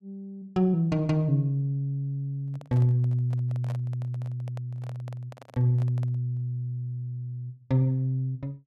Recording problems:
microphone handling noise; from 2.5 to 6.5 s; peak -11 dB vs average level

